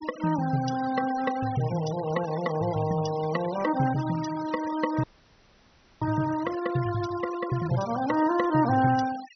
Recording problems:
treble cut off; nothing above 6 kHz
denoising artefacts; signal-to-artefact ratio 15 dB
frozen audio; at 5 s for 1 s

